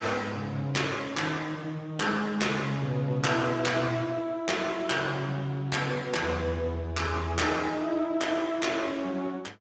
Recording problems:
lossy codec; Speex, log-spectral distance 4 dB, nothing above 7.6 kHz

